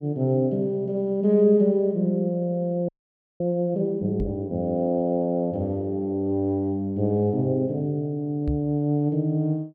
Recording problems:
audio freezing; at 3 s for 0.5 s
knock on the microphone; at 4 s and at 8.5 s; peak 0 dB vs average level

